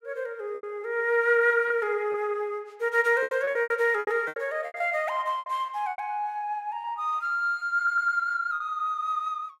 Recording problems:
lost packets; 10% of the sound replaced, filled with repeated pitch periods
stutter; at 8 s

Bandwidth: 16 kHz